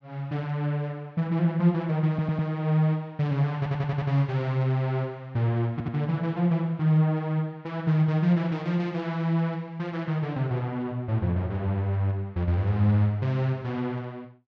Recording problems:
stutter; at 2 s, at 3.5 s and at 5.5 s

